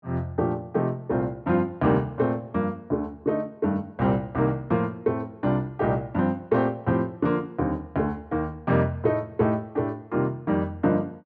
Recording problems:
none

